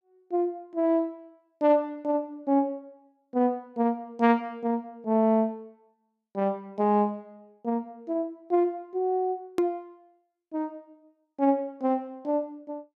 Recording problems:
hard cut with a click; at 9.5 s

